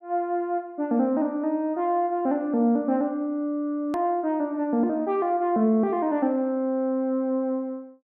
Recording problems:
hard cut with a click; at 4 s

